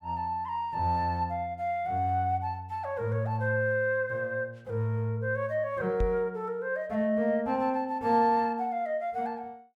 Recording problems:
microphone bump; at 6 s; peak +1 dB vs average level

